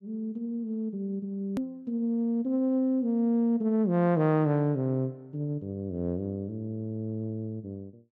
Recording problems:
edit click; at 1.5 s

